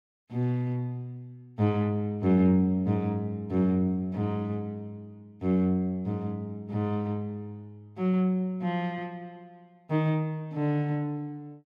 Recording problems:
none

